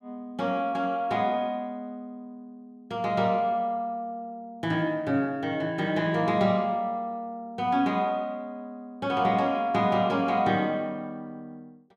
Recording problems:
none

